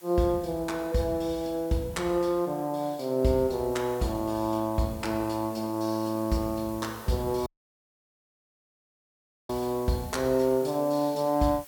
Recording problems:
hiss; slope -1 dB per octave, SNR 20 dB
dropout; at 7.5 s for 2 s

